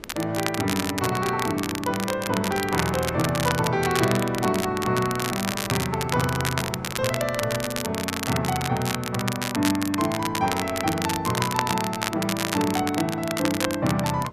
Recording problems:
wind on the microphone; below 520 Hz, SNR 20 dB
crackling; vinyl, SNR 5 dB

